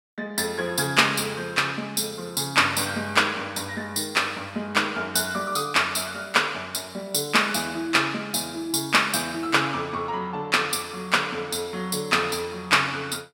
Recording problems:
none

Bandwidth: 17 kHz